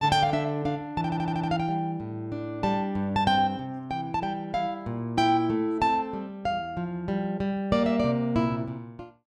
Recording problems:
stutter; at 1 s

